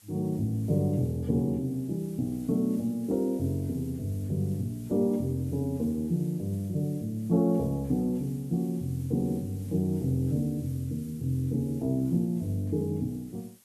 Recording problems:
hiss; slope 0 dB per octave, SNR 25 dB

